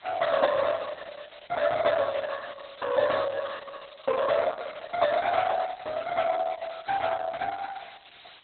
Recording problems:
lossy compression; MP2, then Opus, log-spectral distance 14 dB, nothing above 3.9 kHz
hiss; SNR 22 dB

